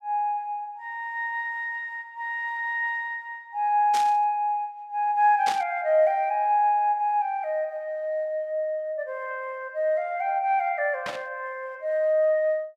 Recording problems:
burst of static; at 4 s, at 5.5 s and at 11 s; peak -2 dB vs average level

